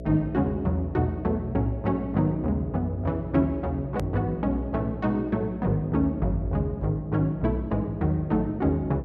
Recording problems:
hum; 60 Hz, harmonics up to 660 Hz, SNR 13 dB
edit click; at 4 s

